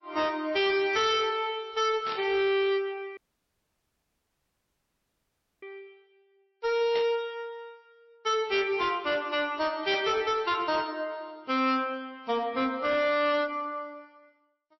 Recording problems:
lossy codec; MP3, then MP3, log-spectral distance 2 dB, nothing above 5.8 kHz
distorted audio; hard clipping, signal-to-distortion ratio 8 dB
burst of static; at 2 s, at 7 s and at 10 s; peak -6 dB vs average level
audio cutting out; at 3 s for 2.5 s

